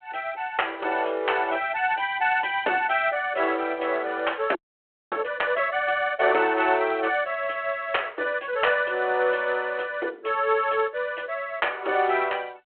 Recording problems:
phone line; 300 Hz to 3.3 kHz, G.726
audio freezing; at 4.5 s for 0.5 s

